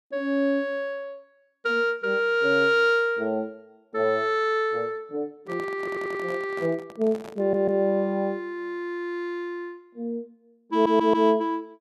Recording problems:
handling noise; from 5.5 to 7.5 s; peak -11 dB vs average level
stutter; at 6 s, at 7.5 s and at 11 s

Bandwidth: 13.5 kHz